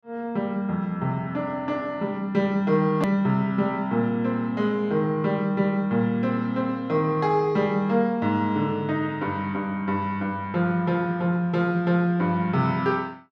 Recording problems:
click at an edit; at 3 s

